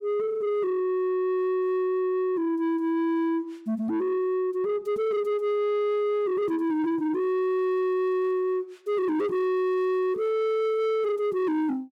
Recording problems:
distorted audio; soft clipping, signal-to-distortion ratio 10 dB

